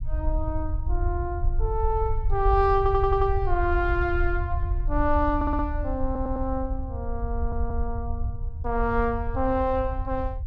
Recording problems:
low-frequency rumble; below 68 Hz, SNR 3 dB
stutter; 4 times, first at 3 s

